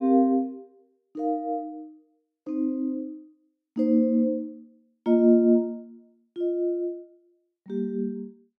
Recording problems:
none

